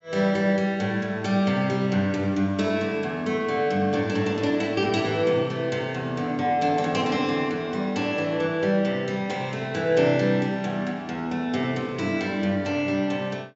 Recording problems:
treble cut off; nothing above 8 kHz

